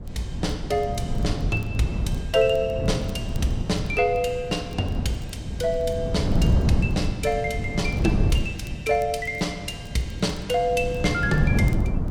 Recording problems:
wind noise; below 170 Hz, SNR 2 dB
crackling; vinyl, SNR 29 dB

